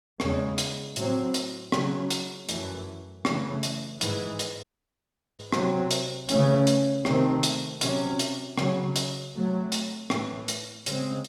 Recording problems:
audio cutting out; at 4.5 s for 1 s

